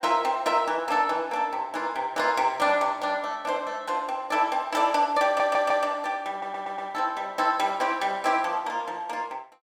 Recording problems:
stutter; at 5.5 s and at 6.5 s

